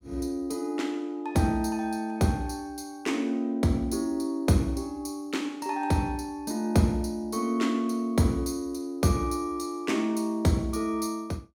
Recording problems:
none

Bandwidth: 17 kHz